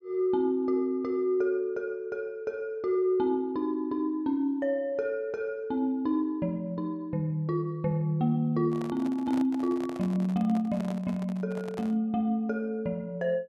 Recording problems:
microphone handling noise; from 8.5 to 12 s; peak -8 dB vs average level

